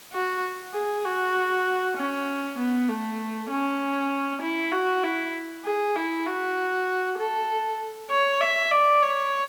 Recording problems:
hiss; slope -1 dB per octave, SNR 22 dB

